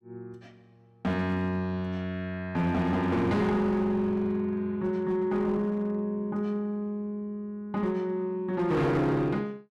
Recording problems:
distorted audio; hard clipping, signal-to-distortion ratio 11 dB

